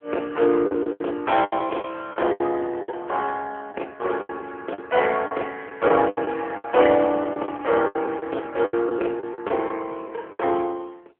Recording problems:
phone line; 300 Hz to 3.3 kHz, AMR-NB
lost packets; 13% of the sound replaced, filled with the last packet

